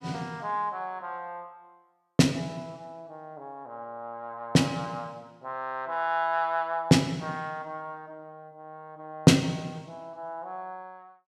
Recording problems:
none

